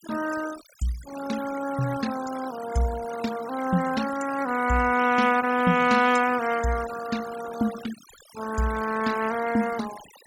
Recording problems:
noise reduction artefacts; signal-to-artefact ratio 13 dB

